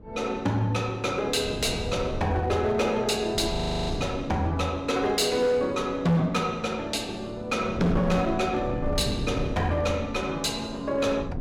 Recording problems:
distortion; hard clipping, signal-to-distortion ratio 11 dB
wind on the microphone; below 240 Hz, SNR 9 dB
frozen audio; at 3.5 s

